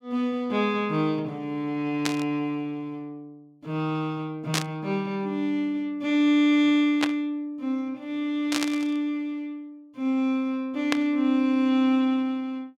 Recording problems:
burst of static; 5 times, first at 2 s; peak +4 dB vs average level

